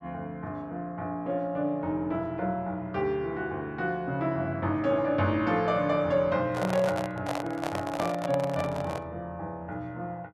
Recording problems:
handling noise; from 6.5 to 9 s; peak +1 dB vs average level

